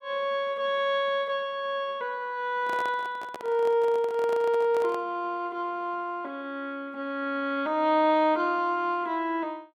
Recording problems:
microphone handling noise; from 2.5 to 5 s; peak -7 dB vs average level

